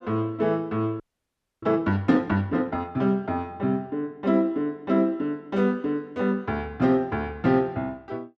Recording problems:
frozen audio; at 1 s for 0.5 s

